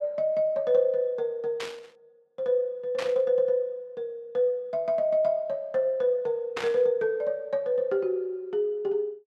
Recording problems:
static burst; at 1.5 s, at 3 s and at 6.5 s; peak -2 dB vs average level

